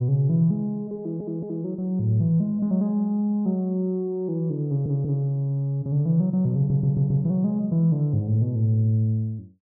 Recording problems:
stutter; at 1 s, at 4.5 s and at 6.5 s

